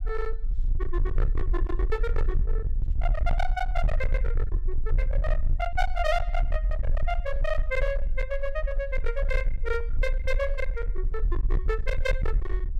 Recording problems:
distortion; hard clipping, signal-to-distortion ratio 8 dB
low-frequency rumble; below 44 Hz, strongest tone 24 Hz, SNR -2 dB

